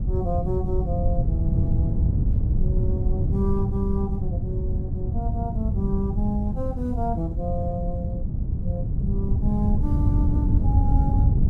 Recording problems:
wind on the microphone; below 120 Hz, SNR -6 dB

